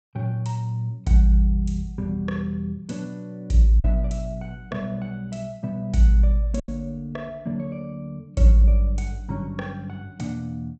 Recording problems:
treble missing; nothing above 8 kHz
lost packets; 1.2% of the sound replaced, filled with silence

